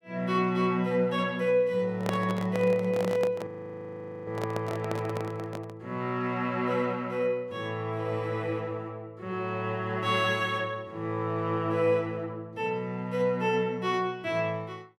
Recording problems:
microphone handling noise; from 2 to 6 s; peak +2 dB vs average level
audio freezing; at 3.5 s for 1 s

